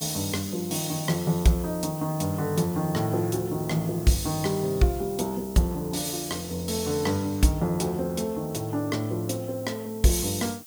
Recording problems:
background hiss; slope +3 dB per octave, SNR 15 dB

